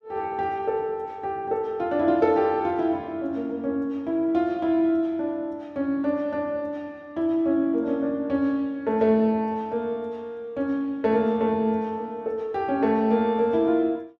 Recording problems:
none

